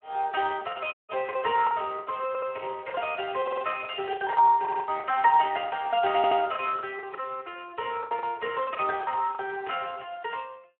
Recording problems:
telephone audio; 340 Hz to 3.1 kHz, Speex
lost packets; 11% of the sound replaced, filled with the last packet
dropout; at 1 s
audio stuttering; 4 times, first at 2.5 s
burst of static; at 9.5 s; peak -9 dB vs average level

